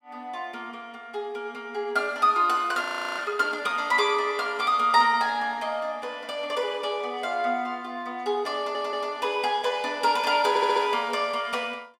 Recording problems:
audio freezing; at 3 s
stutter; at 8.5 s and at 10 s

